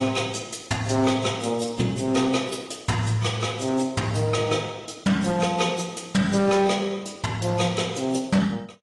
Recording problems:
lossy codec; AAC, log-spectral distance 5 dB, nothing above 10.7 kHz
distorted audio; hard clipping, signal-to-distortion ratio 11 dB

